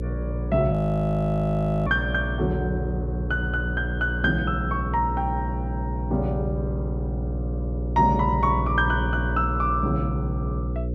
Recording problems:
electrical hum; 60 Hz, harmonics up to 540 Hz, SNR 3 dB
audio freezing; at 0.5 s for 1 s

